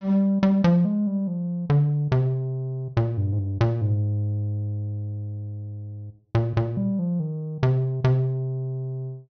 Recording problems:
treble missing; nothing above 6.2 kHz

